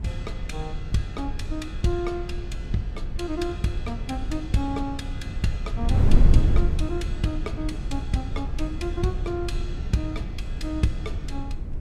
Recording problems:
wind on the microphone; below 88 Hz, SNR -1 dB

